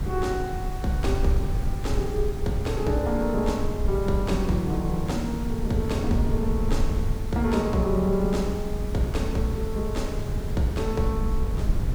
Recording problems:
hiss; slope -4 dB per octave, SNR 15 dB
rumble; below 98 Hz, SNR 3 dB

